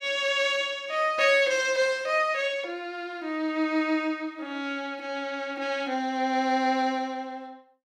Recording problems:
none

